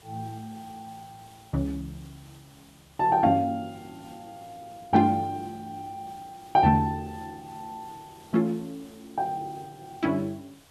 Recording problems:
hiss; slope -2 dB per octave, SNR 27 dB

